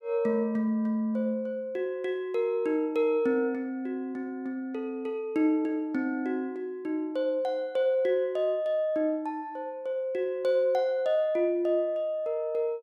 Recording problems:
none

